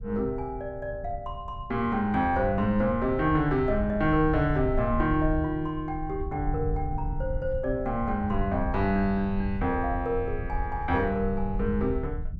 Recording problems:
rumble; below 84 Hz, SNR 8 dB

